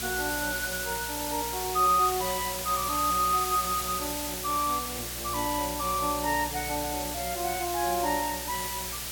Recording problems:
electrical hum; 60 Hz, harmonics up to 720 Hz, SNR 16 dB
hiss; slope +1 dB per octave, SNR 3 dB

